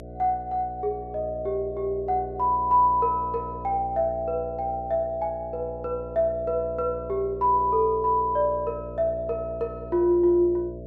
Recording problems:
electrical hum; 60 Hz, harmonics up to 660 Hz, SNR 14 dB

